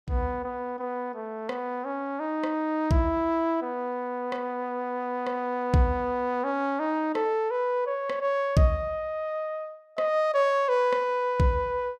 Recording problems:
none

